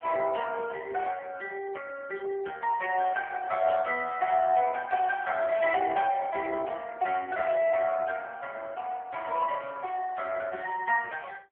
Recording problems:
phone line; 280 Hz to 3.1 kHz, AMR-NB

